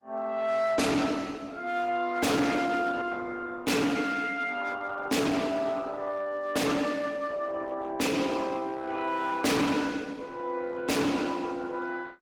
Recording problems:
lossy codec; Opus, log-spectral distance 4 dB, nothing above 19 kHz
distorted audio; hard clipping, uneven, signal-to-distortion ratio 6 dB

